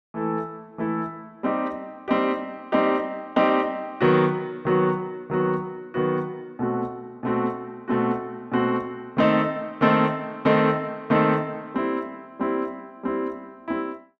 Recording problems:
none

